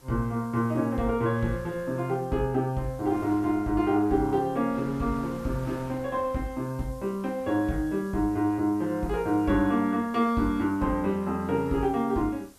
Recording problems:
hiss; SNR 29 dB
wind noise; below 1.1 kHz, SNR 24 dB

